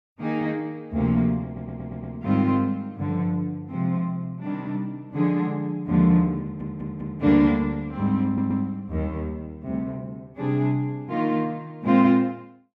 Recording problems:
audio stuttering; at 1.5 s, at 6.5 s and at 8.5 s

